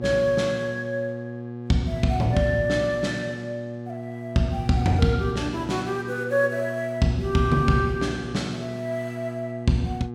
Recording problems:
hum; 60 Hz, harmonics up to 840 Hz, SNR 10 dB

